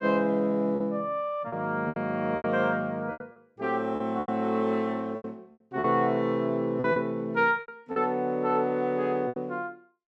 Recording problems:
packet loss; 9% of the sound replaced, filled with repeated pitch periods

